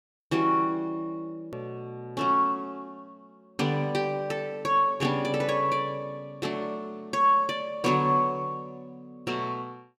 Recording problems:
click at an edit; at 1.5 s

